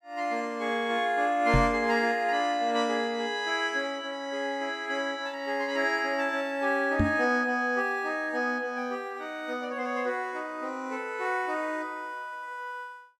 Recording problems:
microphone thump; at 1.5 s and at 7 s; peak +7 dB vs average level

